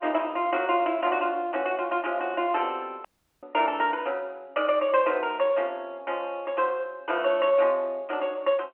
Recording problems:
telephone audio; 220 Hz to 3.3 kHz, G.711
audio cutting out; at 3 s

